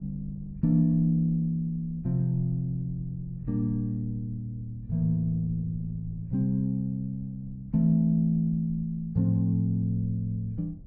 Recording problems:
low-frequency rumble; below 110 Hz, SNR 20 dB

